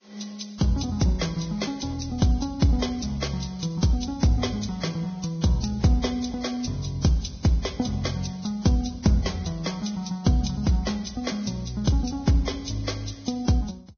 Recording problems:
lossy compression; Vorbis, log-spectral distance 5 dB, nothing above 6.3 kHz

